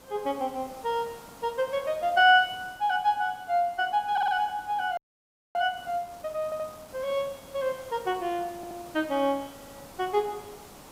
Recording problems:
background hiss; SNR 20 dB
stutter; 4 times, first at 4 s
frozen audio; at 5 s for 0.5 s

